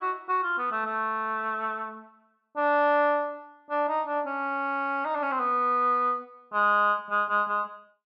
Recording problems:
none

